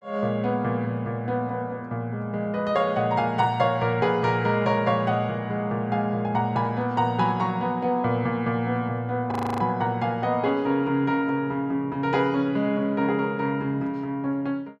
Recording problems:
audio freezing; at 9.5 s

